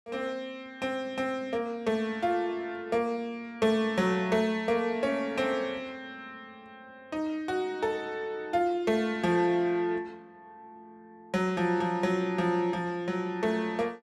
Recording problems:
none

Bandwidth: 13 kHz